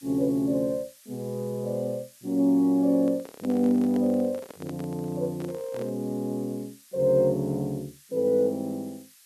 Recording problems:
background hiss; SNR 25 dB
microphone handling noise; from 3 to 6 s; peak -8 dB vs average level

